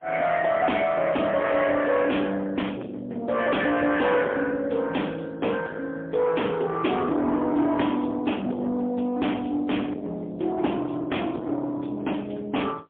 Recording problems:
telephone audio; 260 Hz to 3.4 kHz, AMR-NB, then MP3
distorted audio; soft clipping, signal-to-distortion ratio 8 dB

